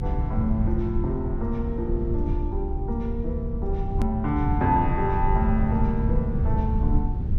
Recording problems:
hum; 50 Hz, harmonics up to 350 Hz, SNR 22 dB
rumble; below 100 Hz, SNR 0 dB
click at an edit; at 4 s

